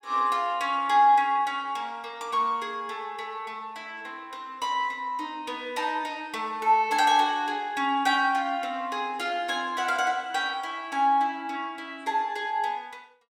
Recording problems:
none

